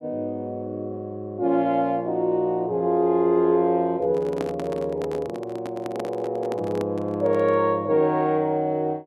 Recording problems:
handling noise; from 4 to 7.5 s; peak -5 dB vs average level

